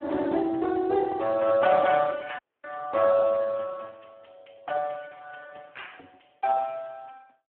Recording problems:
phone line; 130 Hz to 2 kHz, Speex
audio cutting out; at 2.5 s

